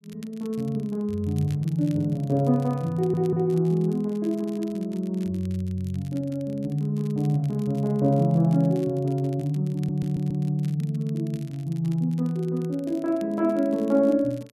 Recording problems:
crackling; vinyl, SNR 28 dB
audio stuttering; at 3 s and at 10 s

